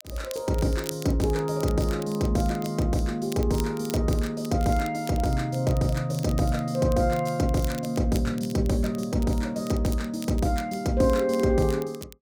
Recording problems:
crackling; vinyl, SNR 18 dB

